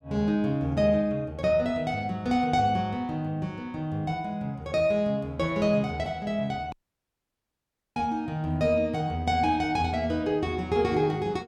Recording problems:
audio cutting out; at 6.5 s for 1 s

